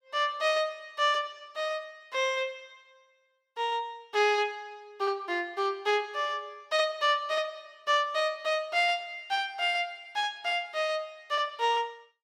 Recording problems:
none

